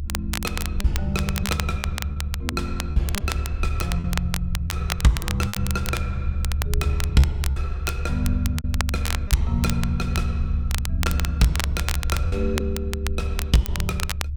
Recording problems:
low-frequency rumble; below 74 Hz, strongest tone 72 Hz, SNR 0 dB
crackle; vinyl, SNR 5 dB
packet loss; 6% of the sound replaced, filled with repeated pitch periods

